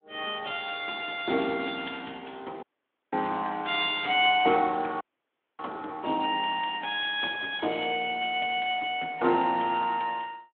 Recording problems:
phone line; 240 Hz to 3.6 kHz, Speex
dropout; at 2.5 s and at 5 s for 0.5 s

